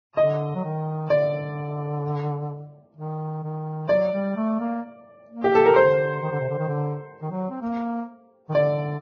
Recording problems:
codec artefacts; Vorbis, log-spectral distance 2 dB, nothing above 6.3 kHz

